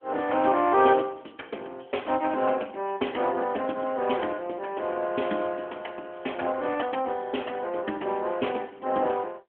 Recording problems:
phone line; 220 Hz to 3.3 kHz, AMR-NB

